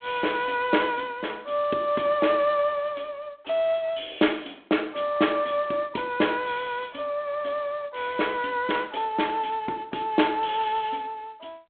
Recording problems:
telephone audio; 220 Hz to 3.5 kHz, G.726

